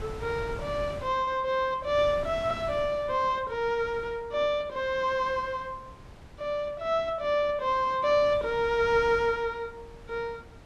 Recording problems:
wind on the microphone; below 550 Hz, SNR 17 dB

